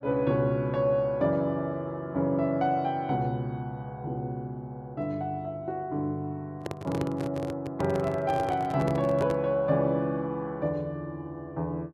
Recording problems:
handling noise; from 6.5 to 9.5 s; peak 0 dB vs average level

